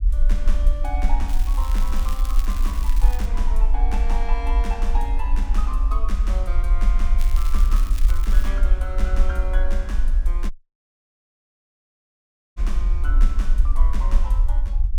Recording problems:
low-frequency rumble; below 44 Hz, SNR -11 dB
crackling; from 1.5 to 3.5 s and from 7 to 8.5 s; loose cable, SNR 6 dB
dropout; at 11 s for 2 s

